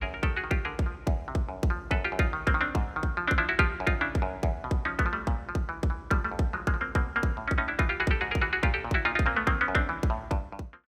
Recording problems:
none

